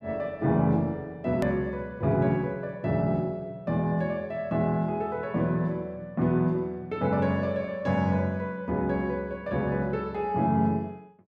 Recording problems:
hard cut with a click; at 1.5 s

